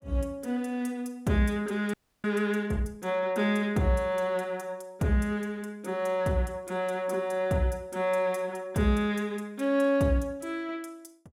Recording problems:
frozen audio; at 2 s

